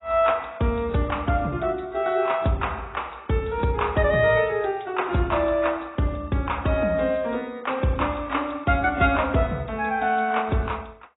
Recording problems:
lossy codec; AAC, log-spectral distance 4 dB, nothing above 3.6 kHz

